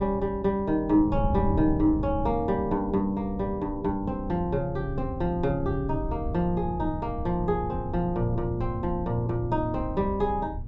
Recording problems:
low-pass filter; nothing above 8 kHz
wind noise; below 120 Hz, SNR 8 dB

